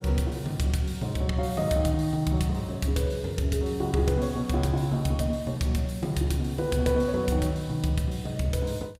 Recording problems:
none

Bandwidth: 15.5 kHz